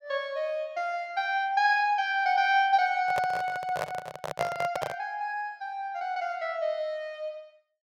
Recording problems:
handling noise; from 3 to 5 s; peak +1 dB vs average level

